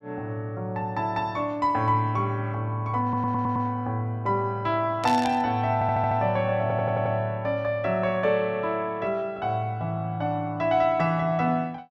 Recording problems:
audio stuttering; at 3 s, at 5.5 s and at 6.5 s
static burst; at 5 s; peak -3 dB vs average level

